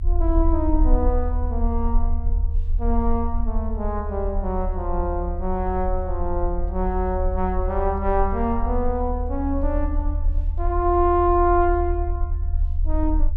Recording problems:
rumble; below 74 Hz, SNR 2 dB

